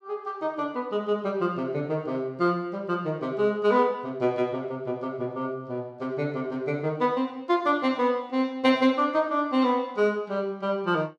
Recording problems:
none

